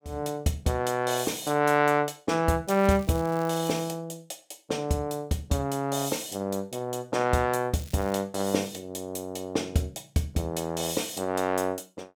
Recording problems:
crackling; from 2.5 to 4 s and at 7.5 s; loose cable, SNR 21 dB

